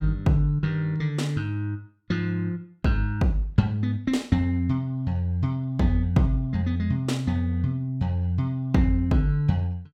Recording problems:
none

